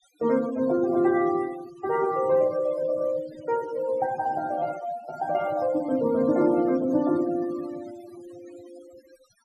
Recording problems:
denoising artefacts; signal-to-artefact ratio 19 dB

